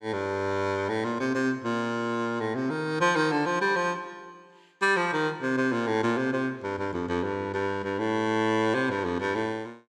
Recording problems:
none

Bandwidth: 14.5 kHz